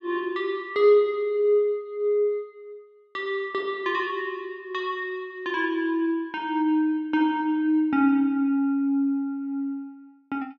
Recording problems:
none

